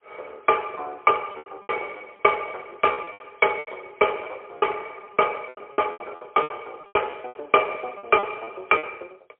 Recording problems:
telephone audio; 320 Hz to 3.3 kHz, AMR-NB, then MP3
lost packets; 13% of the sound replaced, filled with repeated pitch periods

